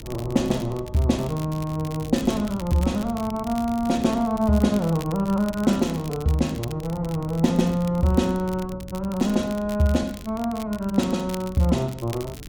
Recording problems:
hum; 60 Hz, harmonics up to 300 Hz, SNR 22 dB
wind noise; below 180 Hz, SNR 17 dB
crackle; vinyl, SNR 19 dB

